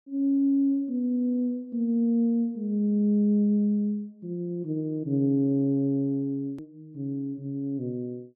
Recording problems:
click at an edit; at 6.5 s

